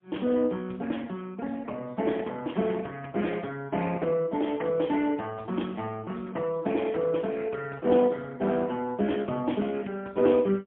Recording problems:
telephone audio; 170 Hz to 3.2 kHz, AMR-NB, then MP3

